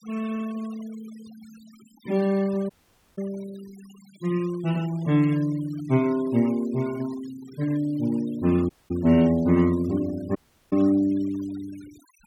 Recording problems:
noise reduction artefacts; signal-to-artefact ratio 23 dB
audio cutting out; at 2.5 s, at 8.5 s and at 10 s

